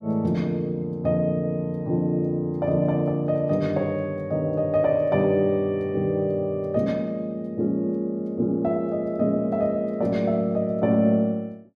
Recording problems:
none

